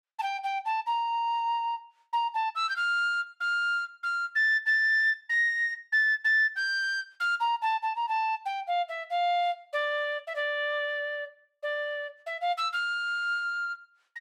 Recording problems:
none

